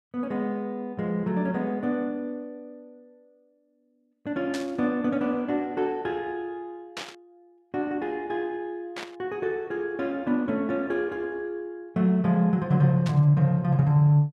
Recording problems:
burst of static; 4 times, first at 4.5 s; peak -5 dB vs average level

